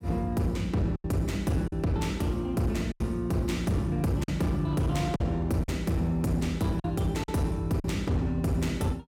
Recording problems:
distortion; hard clipping, uneven, signal-to-distortion ratio 10 dB
lost packets; 5% of the sound replaced, filled with silence

